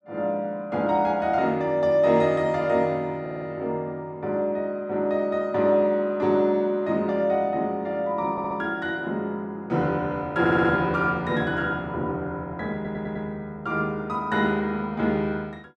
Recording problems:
audio stuttering; 4 times, first at 3 s

